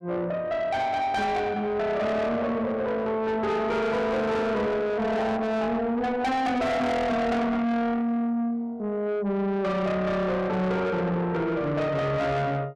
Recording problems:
distortion; soft clipping, signal-to-distortion ratio 8 dB

